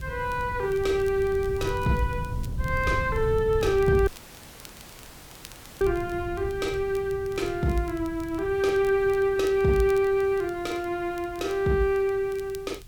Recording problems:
hiss; slope 0 dB per octave, SNR 28 dB
wind noise; below 130 Hz, SNR 11 dB
crackling; vinyl, SNR 26 dB
dropout; at 4 s for 1.5 s

